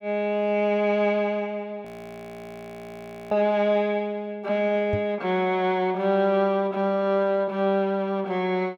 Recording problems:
frozen audio; at 2 s for 1.5 s
microphone bump; at 5 s; peak -1 dB vs average level

